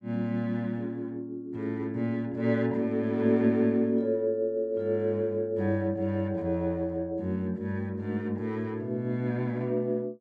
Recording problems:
none

